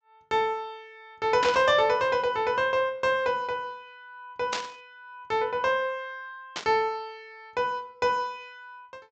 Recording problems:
treble cut off; nothing above 8 kHz
static burst; at 1.5 s, at 4.5 s and at 6.5 s; peak 0 dB vs average level

